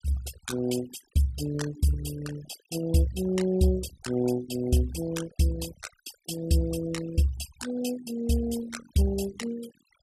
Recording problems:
denoising artefacts; signal-to-artefact ratio 14 dB

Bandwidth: 14.5 kHz